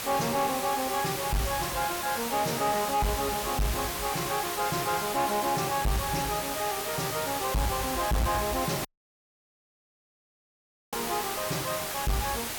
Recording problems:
distorted audio; soft clipping, signal-to-distortion ratio 6 dB
hiss; SNR 4 dB
audio cutting out; at 9 s for 2 s

